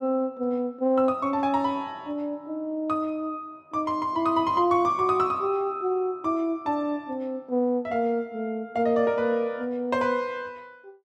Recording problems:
none

